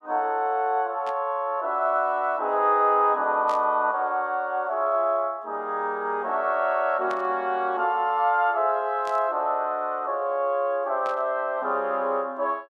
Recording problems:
static burst; 5 times, first at 1 s; peak -12 dB vs average level

